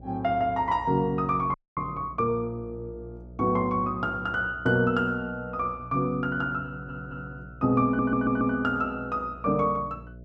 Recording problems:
electrical hum; 60 Hz, harmonics up to 660 Hz, SNR 19 dB
audio freezing; at 1.5 s
stutter; at 6.5 s and at 8 s

